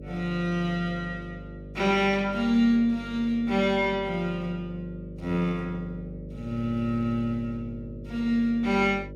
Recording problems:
hum; 50 Hz, harmonics up to 600 Hz, SNR 14 dB

